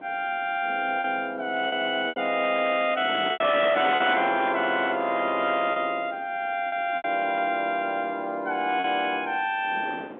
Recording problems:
phone line; 220 Hz to 3.7 kHz, G.711
distorted audio; hard clipping, uneven, signal-to-distortion ratio 11 dB
wind on the microphone; below 1.1 kHz, SNR 16 dB
packet loss; 5% of the sound replaced, filled with repeated pitch periods
crackling; from 2.5 to 5.5 s; loose cable, SNR 28 dB

